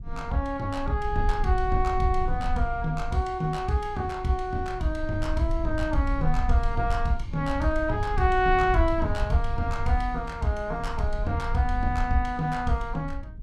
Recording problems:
low-frequency rumble; below 58 Hz, SNR 6 dB

